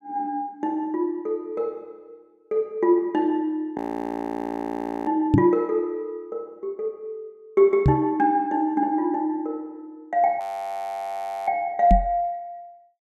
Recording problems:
frozen audio; at 4 s for 1.5 s and at 10 s for 1 s
knock on the microphone; at 5.5 s, at 8 s and at 12 s; peak +10 dB vs average level

